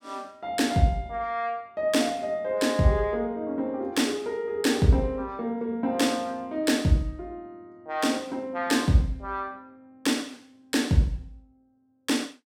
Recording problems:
none

